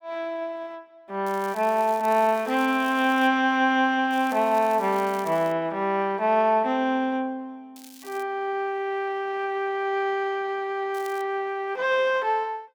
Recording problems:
crackle; 4 times, first at 1.5 s; loose cable, SNR 22 dB

